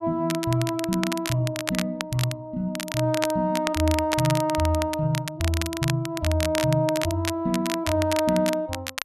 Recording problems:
crackle; vinyl, SNR 8 dB

